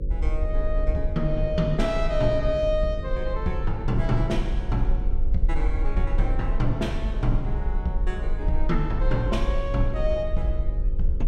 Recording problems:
hum; 50 Hz, harmonics up to 550 Hz, SNR 11 dB
low-frequency rumble; below 48 Hz, SNR 1 dB

